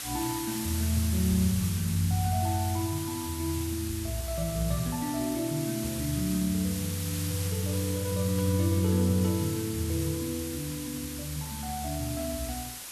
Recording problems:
hiss; slope +1 dB per octave, SNR 7 dB

